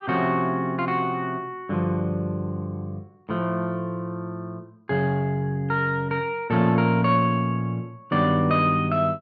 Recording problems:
treble missing; nothing above 6.5 kHz

